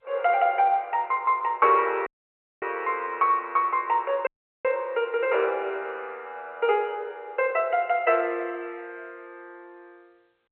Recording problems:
telephone audio; 320 Hz to 3.1 kHz, G.711
dropout; at 2 s for 0.5 s and at 4.5 s

